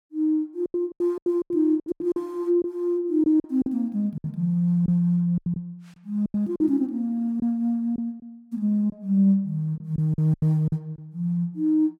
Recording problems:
packet loss; 11% of the sound replaced, filled with silence

